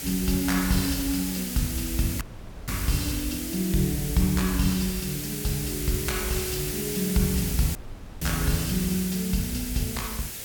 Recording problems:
hiss; SNR 4 dB
dropout; at 2 s and at 8 s

